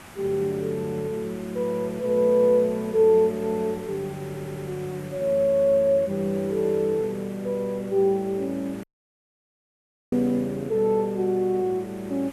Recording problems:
hiss; SNR 21 dB
stutter; at 4 s
dropout; at 9 s for 1.5 s

